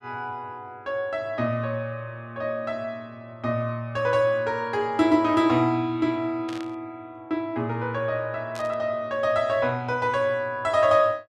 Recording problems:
static burst; at 6.5 s and at 8.5 s; peak -11 dB vs average level

